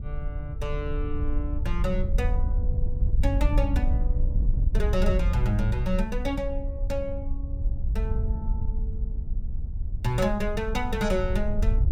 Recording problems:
wind noise; below 66 Hz, SNR -2 dB

